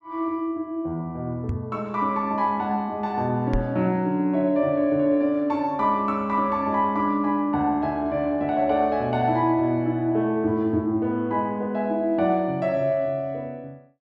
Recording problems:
microphone thump; at 1.5 s and at 3.5 s; peak 0 dB vs average level

